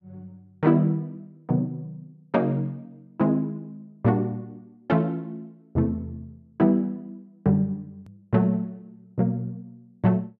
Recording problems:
click at an edit; at 8 s

